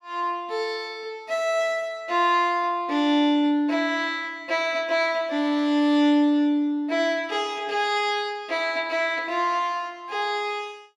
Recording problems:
none

